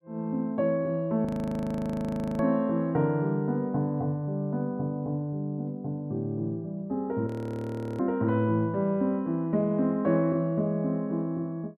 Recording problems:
frozen audio; at 1.5 s for 1 s and at 7.5 s for 0.5 s

